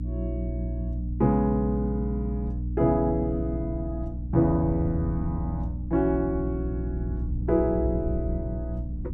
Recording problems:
mains hum; 60 Hz, harmonics up to 300 Hz, SNR 5 dB
wind noise; below 120 Hz, SNR 12 dB

